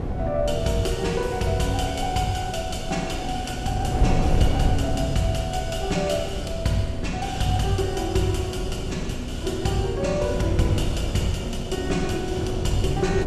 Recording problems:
wind on the microphone; below 180 Hz, SNR 4 dB

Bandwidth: 14.5 kHz